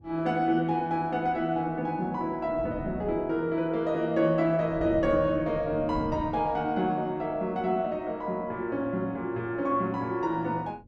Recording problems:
wind on the microphone; below 230 Hz, SNR 14 dB

